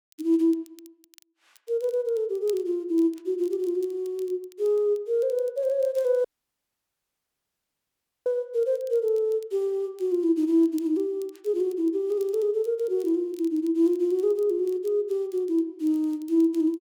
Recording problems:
crackle; vinyl, SNR 30 dB
dropout; at 6.5 s for 2 s

